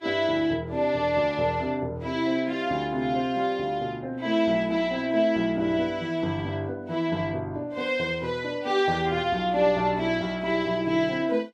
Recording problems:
lossy codec; Vorbis, log-spectral distance 2 dB, nothing above 12.7 kHz

